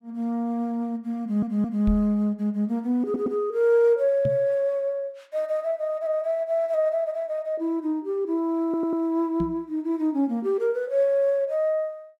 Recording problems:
stutter; at 1 s, at 3 s and at 8.5 s
microphone thump; at 2 s, at 4.5 s and at 9.5 s; peak 0 dB vs average level

